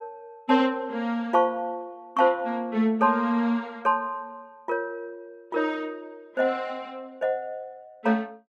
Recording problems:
none

